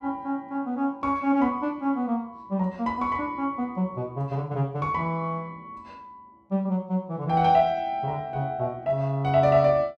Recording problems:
none

